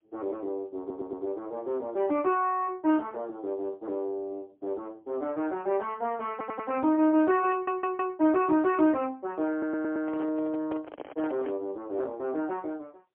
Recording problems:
telephone audio; 240 Hz to 3.3 kHz, AMR-NB, then MP3
stutter; 4 times, first at 1 s
handling noise; from 9.5 to 12 s; peak -5 dB vs average level

